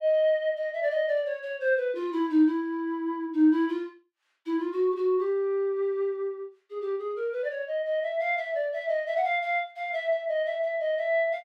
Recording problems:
none

